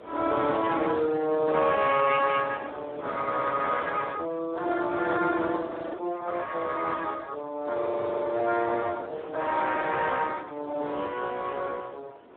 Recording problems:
phone line; 170 Hz to 3.8 kHz, Speex
wind noise; below 890 Hz, SNR 16 dB
frozen audio; at 5.5 s and at 8 s for 0.5 s

